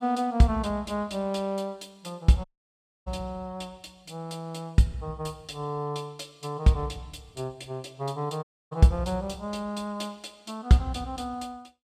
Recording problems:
audio cutting out; at 2.5 s for 0.5 s and at 8.5 s

